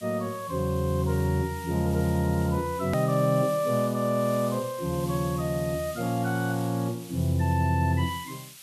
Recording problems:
hiss; slope +4 dB per octave, SNR 17 dB
edit click; at 3 s

